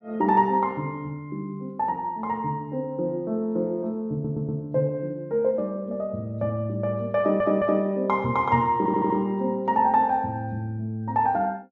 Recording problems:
stutter; at 4 s, at 7 s and at 9 s

